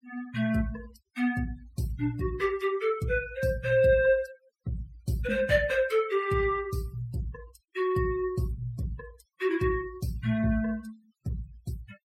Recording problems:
denoising artefacts; signal-to-artefact ratio 21 dB

